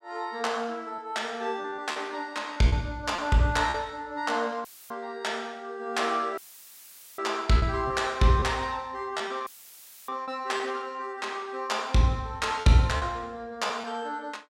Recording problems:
packet loss; 5% of the sound replaced, filled with repeated pitch periods
audio cutting out; at 4.5 s, at 6.5 s for 1 s and at 9.5 s for 0.5 s; filled with static

